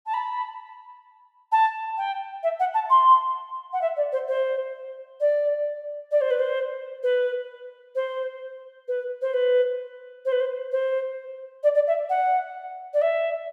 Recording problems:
none

